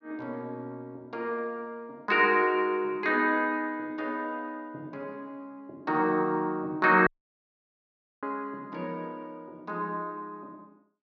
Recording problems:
dropout; at 7 s for 1 s

